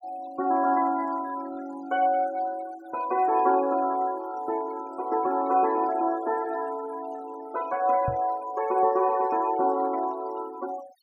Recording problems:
denoising artefacts; signal-to-artefact ratio 20 dB
knock on the microphone; at 8 s; peak -2 dB vs average level

